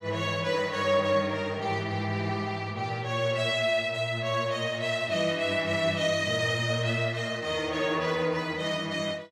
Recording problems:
none

